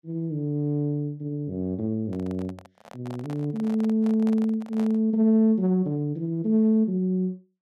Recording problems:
microphone handling noise; from 2 to 5 s; peak -11 dB vs average level

